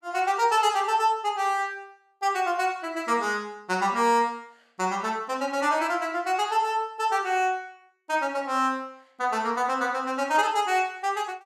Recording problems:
none

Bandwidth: 15.5 kHz